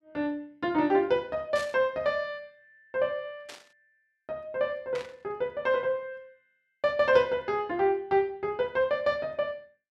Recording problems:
static burst; at 1.5 s, at 3.5 s and at 5 s; peak -9 dB vs average level

